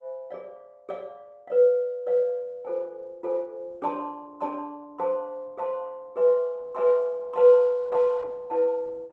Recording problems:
lossy codec; Opus, log-spectral distance 2 dB

